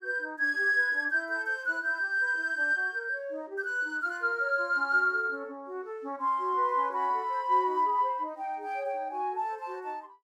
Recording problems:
none

